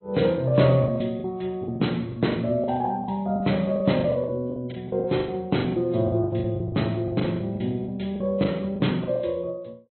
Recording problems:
low-pass filter; nothing above 4 kHz
lossy compression; MP3, log-spectral distance 2 dB
packet loss; 16% of the sound replaced, filled with the last packet

